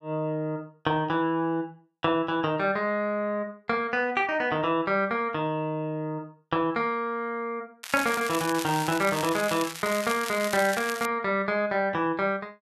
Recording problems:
crackling; from 8 to 11 s; loose cable, SNR 8 dB

